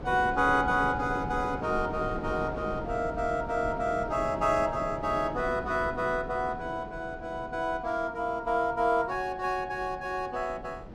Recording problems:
wind on the microphone; below 460 Hz, SNR 11 dB

